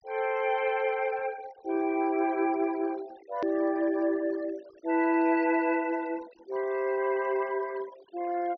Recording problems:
treble cut off; nothing above 5.9 kHz
noise reduction artefacts; signal-to-artefact ratio 21 dB
click at an edit; at 3.5 s

